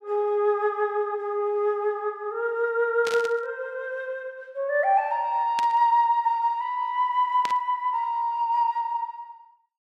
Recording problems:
static burst; at 3 s, at 5.5 s and at 7.5 s; peak -4 dB vs average level

